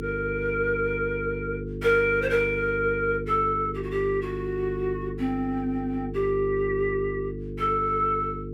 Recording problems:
electrical hum; 50 Hz, harmonics up to 450 Hz, SNR 8 dB

